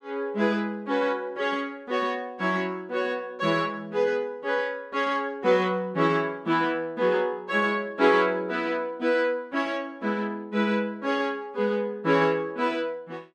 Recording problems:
none

